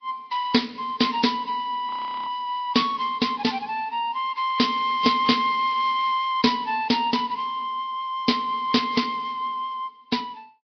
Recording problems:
low-pass filter; nothing above 5.3 kHz
codec artefacts; AAC, then MP3, log-spectral distance 3 dB
frozen audio; at 2 s

